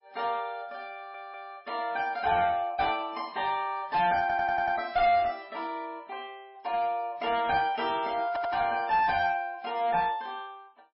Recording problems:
lossy compression; MP3, log-spectral distance 2 dB, nothing above 5.3 kHz
distorted audio; hard clipping, uneven, signal-to-distortion ratio 10 dB
audio stuttering; at 1 s, at 4 s and at 8.5 s

